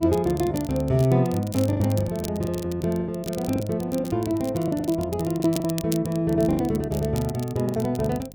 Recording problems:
hum; 50 Hz, harmonics up to 850 Hz, SNR 23 dB
crackle; vinyl, SNR 16 dB
packet loss; 12% of the sound replaced, filled with the last packet

